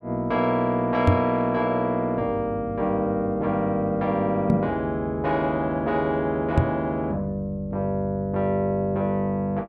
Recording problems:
knock on the microphone; at 1 s, at 4.5 s and at 6.5 s; peak +9 dB vs average level

